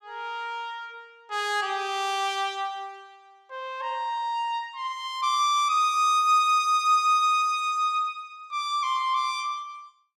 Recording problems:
none

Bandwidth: 15.5 kHz